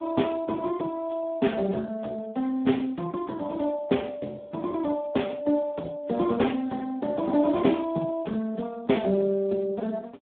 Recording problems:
telephone audio; 150 Hz to 3.6 kHz, Speex

